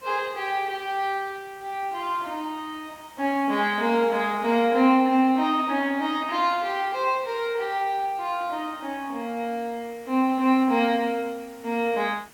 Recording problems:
hiss; slope -2 dB per octave, SNR 26 dB

